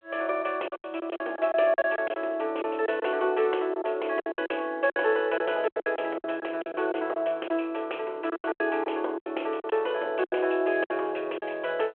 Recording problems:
phone line; 300 Hz to 3.3 kHz, G.726
packet loss; 13% of the sound replaced, filled with silence

